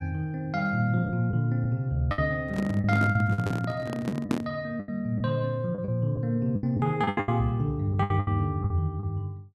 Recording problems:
lost packets; 10% of the sound replaced, filled with the last packet
microphone handling noise; from 2.5 to 4.5 s; peak +4 dB vs average level

